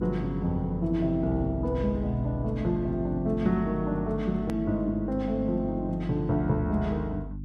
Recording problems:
electrical hum; 50 Hz, harmonics up to 300 Hz, SNR 9 dB
edit click; at 4.5 s

